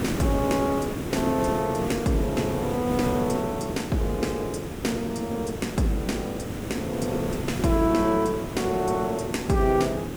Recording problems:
background hiss; SNR 6 dB

